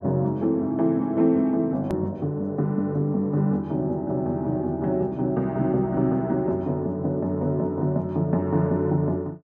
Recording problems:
edit click; at 2 s

